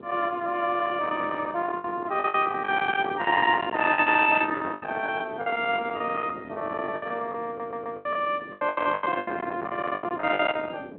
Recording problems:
telephone audio; 320 Hz to 3.4 kHz, G.726
distorted audio; soft clipping, signal-to-distortion ratio 14 dB
wind on the microphone; below 1.9 kHz, SNR 10 dB
lost packets; 14% of the sound replaced, filled with the last packet
audio stuttering; at 7.5 s

